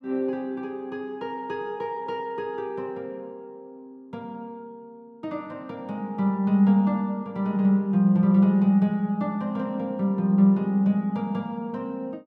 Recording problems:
none

